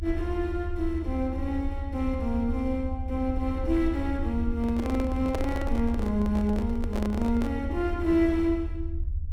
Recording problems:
rumble; below 80 Hz, SNR 5 dB
microphone handling noise; from 4.5 to 7.5 s; peak 0 dB vs average level

